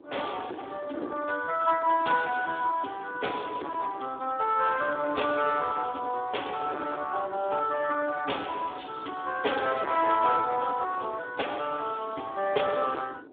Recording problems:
telephone audio; 260 Hz to 3 kHz, Speex
distorted audio; hard clipping, uneven, signal-to-distortion ratio 7 dB
wind noise; below 510 Hz, SNR 18 dB

